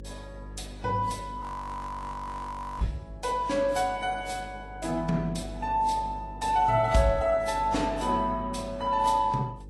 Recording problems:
lossy codec; AAC, then Vorbis, log-spectral distance 3 dB, nothing above 11.3 kHz
electrical hum; 50 Hz, harmonics up to 550 Hz, SNR 15 dB
audio freezing; at 1.5 s for 1.5 s

